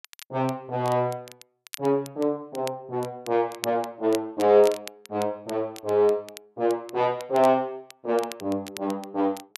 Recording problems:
crackling; vinyl, SNR 18 dB

